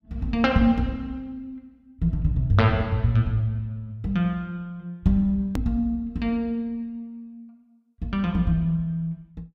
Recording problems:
click at an edit; at 5.5 s

